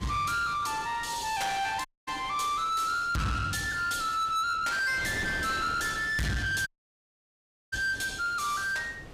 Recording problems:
distortion; soft clipping, signal-to-distortion ratio 8 dB
wind noise; below 1.7 kHz, SNR 15 dB
dropout; at 2 s and at 6.5 s for 1 s

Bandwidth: 15.5 kHz